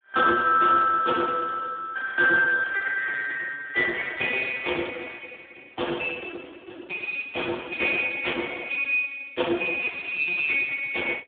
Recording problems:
phone line; 280 Hz to 3.6 kHz, Speex

